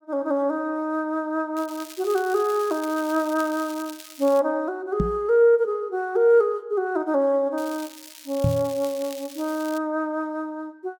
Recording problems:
crackle; from 1.5 to 4.5 s and from 7.5 to 10 s; loose cable, SNR 17 dB
microphone thump; at 5 s and at 8.5 s; peak +4 dB vs average level

